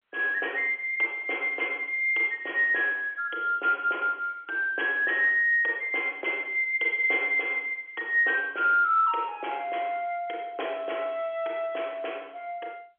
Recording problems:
phone line; 300 Hz to 3.4 kHz, G.711

